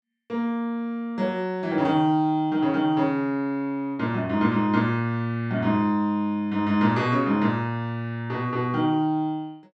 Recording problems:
none

